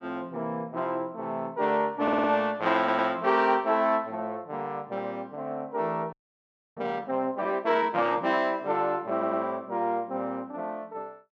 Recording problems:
audio stuttering; at 2 s, at 3 s and at 9 s
audio freezing; at 6 s for 0.5 s

